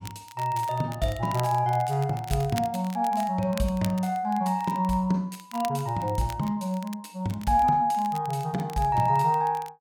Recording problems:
crackle; vinyl, SNR 19 dB

